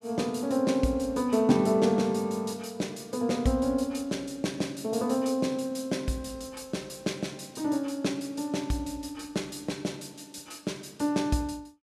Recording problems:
none

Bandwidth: 14.5 kHz